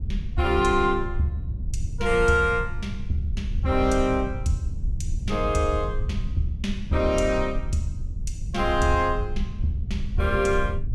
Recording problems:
rumble; below 82 Hz, SNR 6 dB

